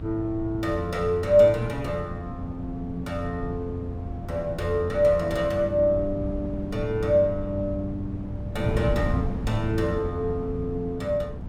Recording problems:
hum; 60 Hz, harmonics up to 840 Hz, SNR 18 dB
wind on the microphone; below 180 Hz, SNR 9 dB

